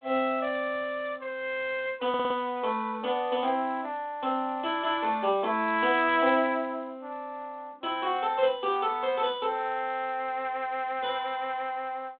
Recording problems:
phone line; 240 Hz to 3.6 kHz, G.726
stutter; at 2 s

